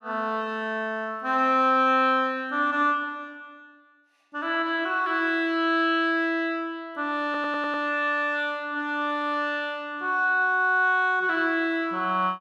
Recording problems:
audio stuttering; at 7.5 s

